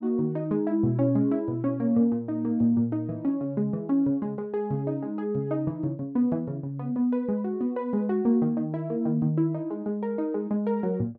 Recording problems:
none

